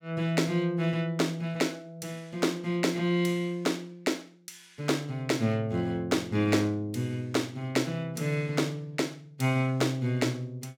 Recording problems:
none

